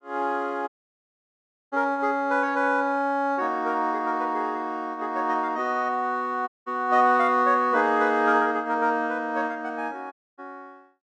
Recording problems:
dropout; at 0.5 s for 1 s, at 6.5 s and at 10 s

